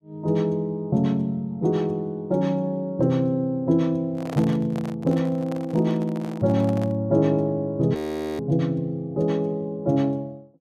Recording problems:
microphone handling noise; from 4 to 7 s; peak -5 dB vs average level
frozen audio; at 8 s

